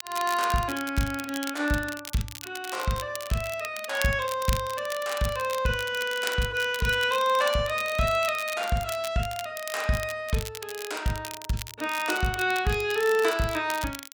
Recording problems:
crackle; vinyl, SNR 11 dB

